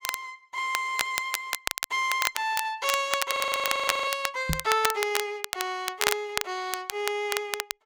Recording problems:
crackle; vinyl, SNR 3 dB
audio freezing; at 3.5 s for 1 s
knock on the microphone; at 4.5 s; peak +3 dB vs average level

